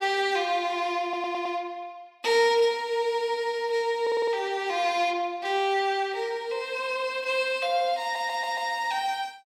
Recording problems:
audio stuttering; at 1 s, at 4 s and at 8 s

